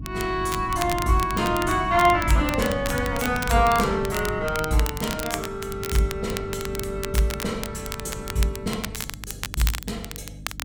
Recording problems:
hum; 50 Hz, harmonics up to 300 Hz, SNR 15 dB
wind noise; below 190 Hz, SNR 12 dB
crackling; vinyl, SNR 10 dB

